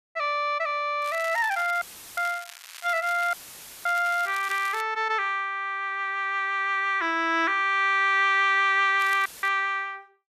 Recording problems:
crackling; from 1 to 5 s and at 9 s; loose cable, SNR 18 dB
audio cutting out; at 2 s, at 3.5 s for 0.5 s and at 9.5 s; filled with static

